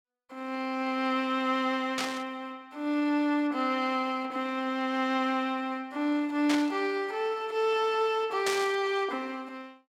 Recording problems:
burst of static; at 2 s, at 6.5 s and at 8.5 s; peak +2 dB vs average level

